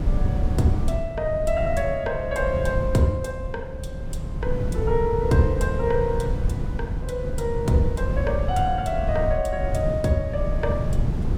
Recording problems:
wind on the microphone; below 130 Hz, SNR 2 dB

